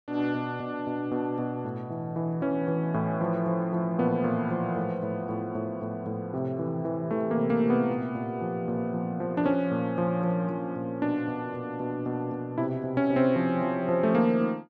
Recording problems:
none

